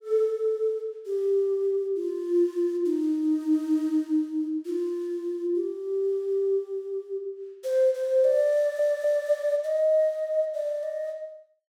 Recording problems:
stutter; at 8.5 s

